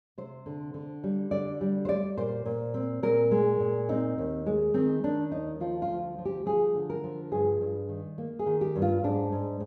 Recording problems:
none

